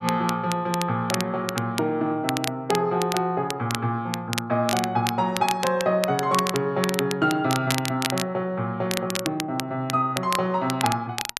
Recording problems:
crackle; vinyl, SNR 7 dB

